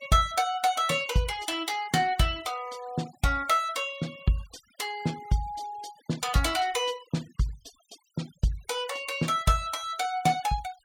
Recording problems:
noise reduction artefacts; signal-to-artefact ratio 21 dB

